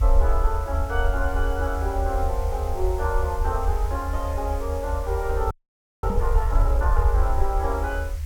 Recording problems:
background hiss; SNR 17 dB
rumble; below 74 Hz, SNR -2 dB
audio freezing; at 5.5 s for 0.5 s
knock on the microphone; at 6 s; peak +1 dB vs average level

